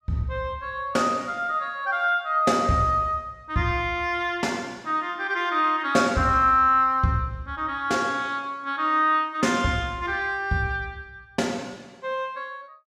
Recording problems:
none

